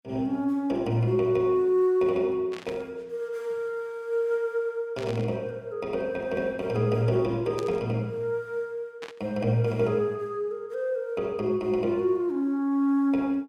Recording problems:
static burst; 4 times, first at 2.5 s; peak -9 dB vs average level

